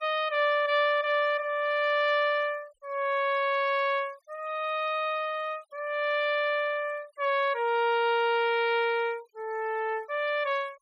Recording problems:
denoising artefacts; signal-to-artefact ratio 27 dB

